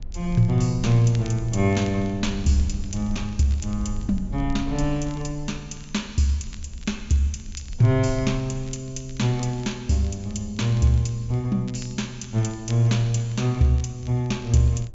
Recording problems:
treble cut off; nothing above 8 kHz
rumble; below 60 Hz, SNR 15 dB
crackle; vinyl, SNR 27 dB

